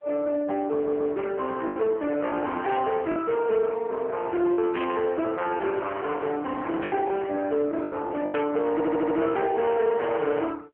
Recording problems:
telephone audio; 260 Hz to 3.2 kHz, AMR-NB
distortion; hard clipping, uneven, signal-to-distortion ratio 12 dB
lost packets; 5% of the sound replaced, filled with the last packet
stutter; at 1 s and at 8.5 s
static burst; 4 times, first at 2.5 s; peak -3 dB vs average level

